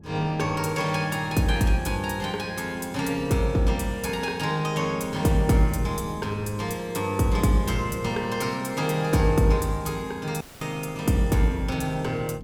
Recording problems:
wind on the microphone; below 270 Hz, SNR 19 dB
audio cutting out; at 10 s

